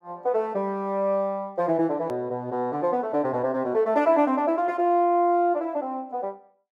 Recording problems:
edit click; at 2 s

